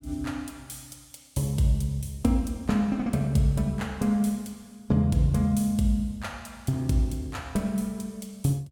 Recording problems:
none

